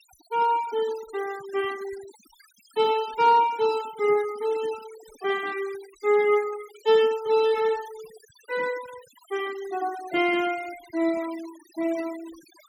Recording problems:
noise reduction artefacts; signal-to-artefact ratio 20 dB

